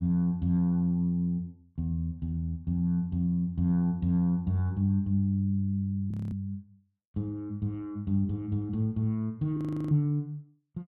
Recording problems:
frozen audio; at 6 s and at 9.5 s

